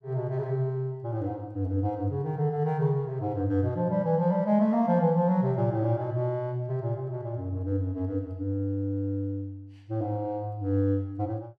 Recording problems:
none

